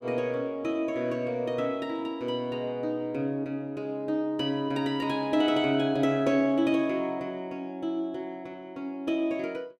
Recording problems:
none

